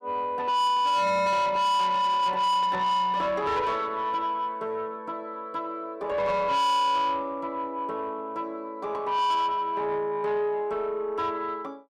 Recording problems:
distorted audio; soft clipping, signal-to-distortion ratio 8 dB

